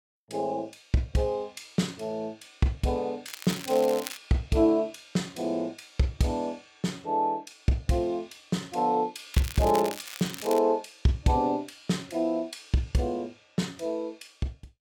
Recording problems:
crackle; at 3.5 s and from 9.5 to 11 s; loose cable, SNR 11 dB

